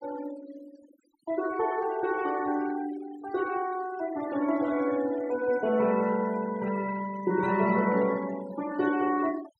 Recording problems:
denoising artefacts; signal-to-artefact ratio 17 dB

